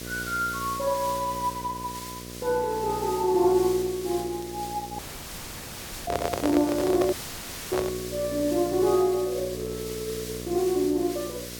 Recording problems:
hum; 60 Hz, harmonics up to 1.3 kHz, SNR 12 dB
hiss; SNR 12 dB
crackle; from 4 to 6 s and from 8 to 11 s; loose cable, SNR 26 dB
dropout; at 5 s for 1 s and at 7 s for 0.5 s
handling noise; from 6 to 8 s; peak +2 dB vs average level

